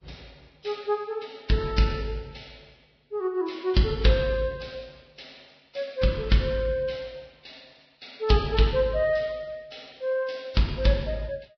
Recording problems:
lossy compression; Vorbis, log-spectral distance 7 dB, nothing above 5.3 kHz

